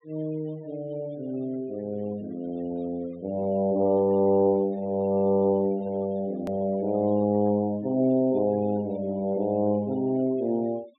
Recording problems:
treble missing; nothing above 4 kHz
noise reduction artefacts; signal-to-artefact ratio 27 dB
hard cut with a click; at 6.5 s

